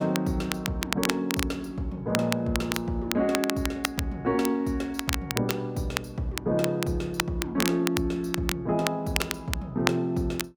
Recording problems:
crackle; vinyl, SNR 5 dB

